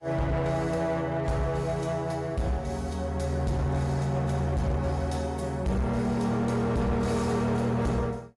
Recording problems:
lossy compression; AAC, log-spectral distance 2 dB, nothing above 11 kHz
distortion; hard clipping, signal-to-distortion ratio 11 dB

